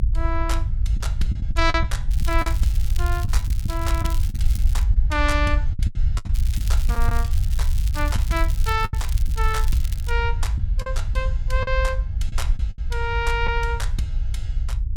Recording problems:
rumble; below 64 Hz, SNR -3 dB
lost packets; 7% of the sound replaced, filled with the last packet
crackle; from 2 to 5 s and from 6.5 to 10 s; loose cable, SNR 12 dB

